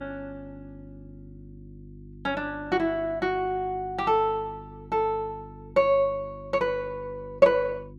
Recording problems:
hum; 50 Hz, harmonics up to 350 Hz, SNR 19 dB

